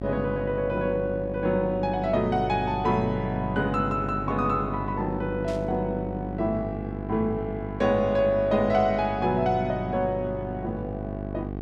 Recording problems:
hum; 50 Hz, harmonics up to 1.1 kHz, SNR 8 dB
static burst; at 5.5 s; peak -13 dB vs average level

